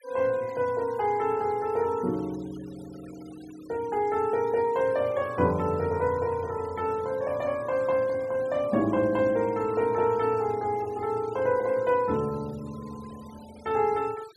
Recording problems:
denoising artefacts; signal-to-artefact ratio 24 dB

